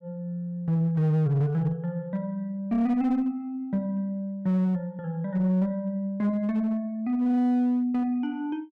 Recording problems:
distorted audio; hard clipping, uneven, signal-to-distortion ratio 11 dB

